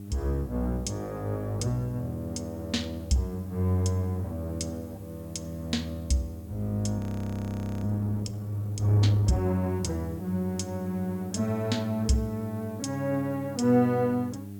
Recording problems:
hum; 50 Hz, harmonics up to 700 Hz, SNR 13 dB
background hiss; slope -1 dB per octave, SNR 27 dB
frozen audio; at 7 s for 1 s

